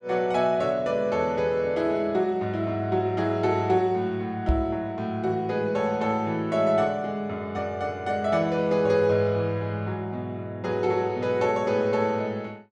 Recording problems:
microphone bump; at 4.5 s; peak +5 dB vs average level

